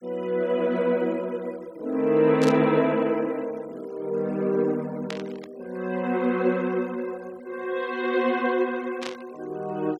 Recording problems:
noise reduction artefacts; signal-to-artefact ratio 26 dB
burst of static; at 2.5 s, at 5 s and at 9 s; peak -4 dB vs average level

